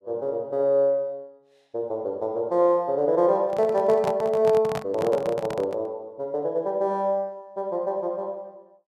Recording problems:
microphone handling noise; from 3.5 to 6 s; peak -3 dB vs average level

